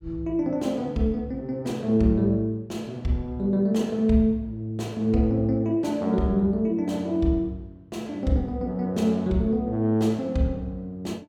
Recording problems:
none

